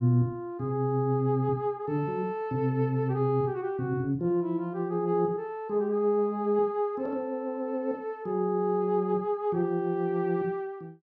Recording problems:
none

